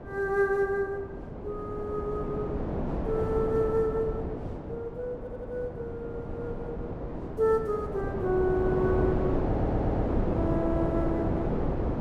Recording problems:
wind on the microphone; below 490 Hz, SNR 2 dB
stutter; at 5 s and at 9.5 s

